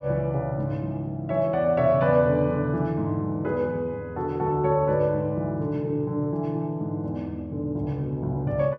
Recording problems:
none

